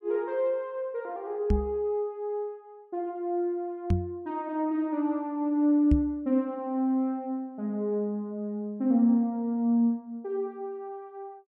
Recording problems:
microphone bump; at 1.5 s, at 4 s and at 6 s; peak +7 dB vs average level

